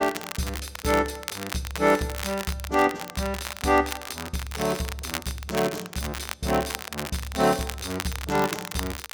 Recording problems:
crackling; vinyl, SNR 8 dB

